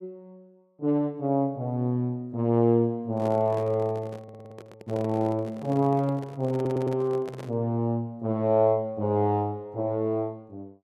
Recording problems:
handling noise; from 3 to 7.5 s; peak -9 dB vs average level
stutter; at 4 s and at 6.5 s

